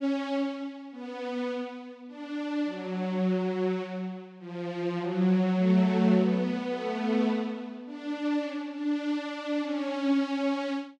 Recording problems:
none

